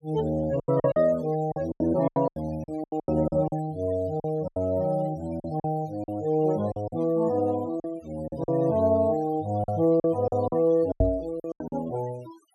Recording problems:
noise reduction artefacts; signal-to-artefact ratio 22 dB
packet loss; 13% of the sound replaced, filled with silence
microphone thump; at 11 s; peak +4 dB vs average level

